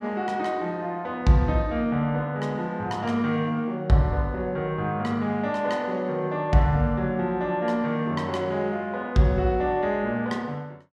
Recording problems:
none

